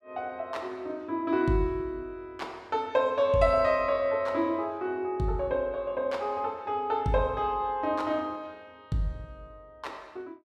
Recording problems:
none

